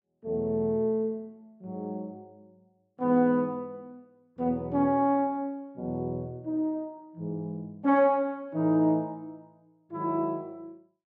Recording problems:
none

